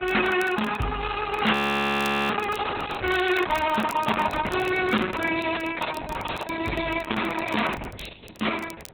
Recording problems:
lossy compression; AAC, then Opus, log-spectral distance 7 dB
distorted audio; soft clipping, signal-to-distortion ratio 11 dB
wind noise; below 690 Hz, SNR 17 dB
crackle; vinyl, SNR 23 dB
audio freezing; at 1.5 s for 1 s

